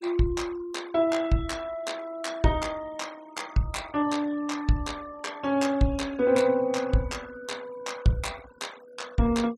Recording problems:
denoising artefacts; signal-to-artefact ratio 20 dB

